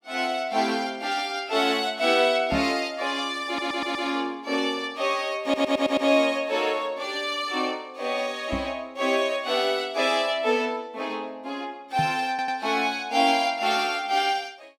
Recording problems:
microphone thump; at 2.5 s, at 8.5 s and at 12 s; peak -2 dB vs average level
audio stuttering; at 3.5 s, at 5.5 s and at 12 s

